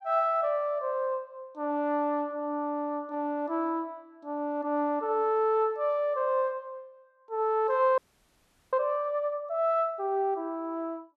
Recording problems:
frozen audio; at 8 s for 1 s

